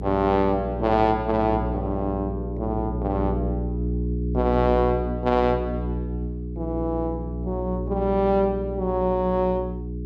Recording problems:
mains hum; 60 Hz, harmonics up to 420 Hz, SNR 5 dB

